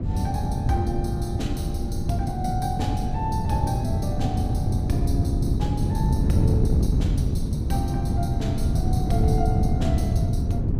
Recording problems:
wind noise; below 170 Hz, SNR -6 dB

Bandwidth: 15.5 kHz